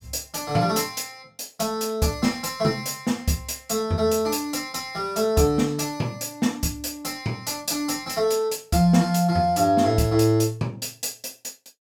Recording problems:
none

